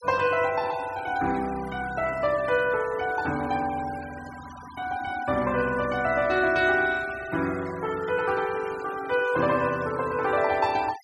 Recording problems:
denoising artefacts; signal-to-artefact ratio 17 dB

